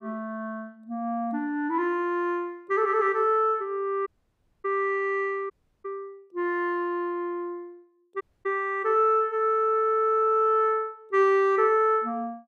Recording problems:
dropout; at 4 s for 0.5 s, at 5.5 s and at 8 s

